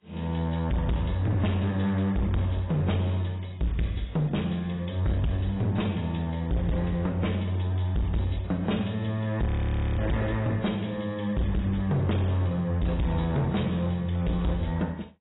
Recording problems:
lossy codec; AAC, log-spectral distance 3 dB, nothing above 3.8 kHz
distorted audio; hard clipping, uneven, signal-to-distortion ratio 7 dB
frozen audio; at 9.5 s for 0.5 s

